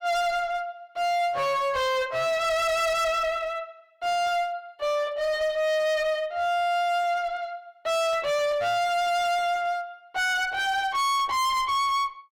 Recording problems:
distorted audio; hard clipping, uneven, signal-to-distortion ratio 6 dB

